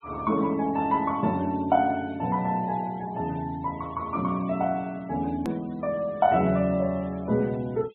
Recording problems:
treble missing; nothing above 4 kHz
denoising artefacts; signal-to-artefact ratio 26 dB
edit click; at 5.5 s

